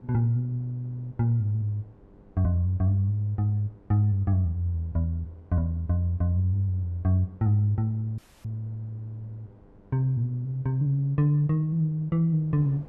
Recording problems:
mains hum; 50 Hz, harmonics up to 1.6 kHz, SNR 31 dB
wind noise; below 350 Hz, SNR 29 dB
dropout; at 8 s

